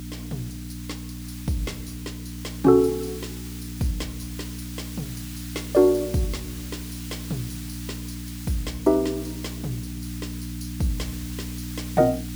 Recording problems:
mains hum; 60 Hz, harmonics up to 300 Hz, SNR 10 dB
hiss; slope +3 dB per octave, SNR 15 dB

